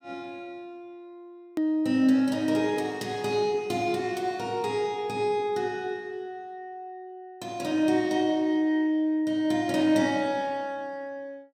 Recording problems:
edit click; at 1.5 s

